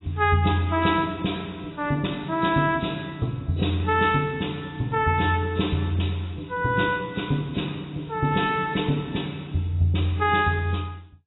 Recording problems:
lossy codec; AAC, log-spectral distance 6 dB, nothing above 3.9 kHz

